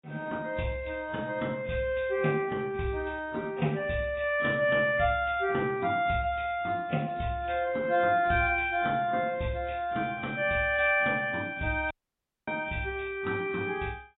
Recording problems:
lossy codec; AAC, log-spectral distance 3 dB, nothing above 3.7 kHz
audio cutting out; at 12 s for 0.5 s

